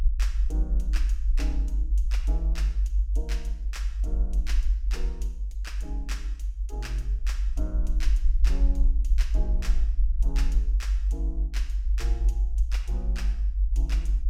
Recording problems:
low-frequency rumble; below 52 Hz, strongest tone 50 Hz, SNR -14 dB

